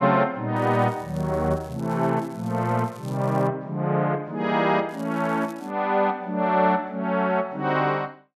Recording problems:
crackling; from 0.5 to 3.5 s and at 5 s; loose cable, SNR 27 dB

